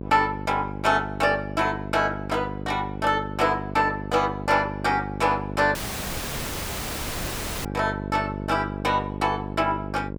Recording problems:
hum; 50 Hz, harmonics up to 1 kHz, SNR 9 dB
audio cutting out; at 6 s for 2 s

